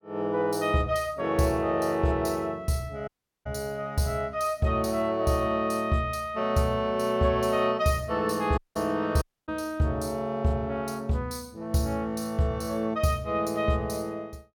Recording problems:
audio cutting out; at 3 s, at 8.5 s and at 9 s

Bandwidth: 17.5 kHz